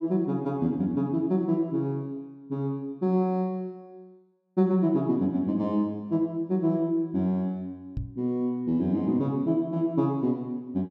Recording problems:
microphone bump; at 8 s; peak -2 dB vs average level

